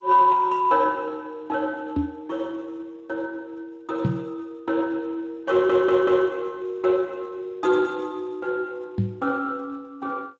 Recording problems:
lossy compression; G.722, then Speex, log-spectral distance 2 dB
microphone bump; at 2 s, at 4 s and at 9 s; peak +4 dB vs average level
audio stuttering; at 5.5 s

